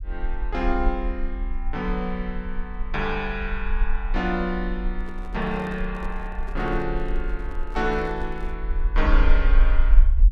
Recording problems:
rumble; below 42 Hz, strongest tone 24 Hz, SNR -1 dB
microphone handling noise; from 5 to 8.5 s; peak -6 dB vs average level

